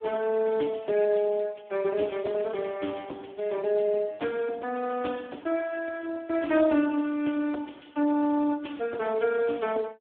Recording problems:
phone line; 240 Hz to 3.4 kHz, Speex

